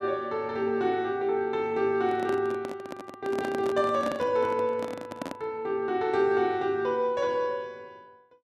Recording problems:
handling noise; from 2 to 5.5 s; peak -3 dB vs average level

